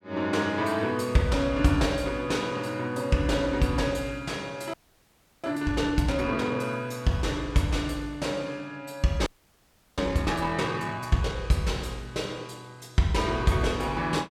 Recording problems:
audio freezing; at 4.5 s for 0.5 s and at 9.5 s for 0.5 s

